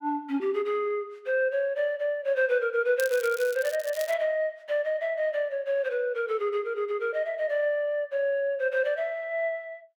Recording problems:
crackling; from 3 to 4 s; loose cable, SNR 14 dB

